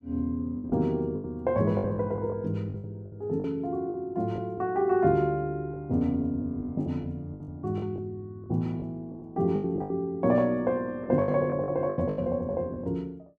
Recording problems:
packet loss; 12% of the sound replaced, filled with the last packet

